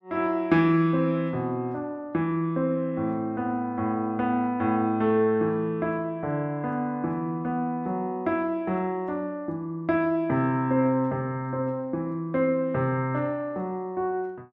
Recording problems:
none

